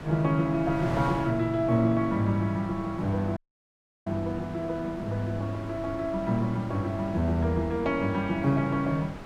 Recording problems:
wind on the microphone; below 980 Hz, SNR 13 dB
audio cutting out; at 3.5 s for 0.5 s

